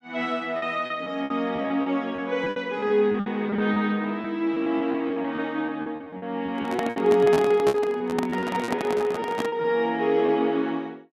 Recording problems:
packet loss; 13% of the sound replaced, filled with repeated pitch periods
microphone handling noise; from 6.5 to 9.5 s; peak +1 dB vs average level

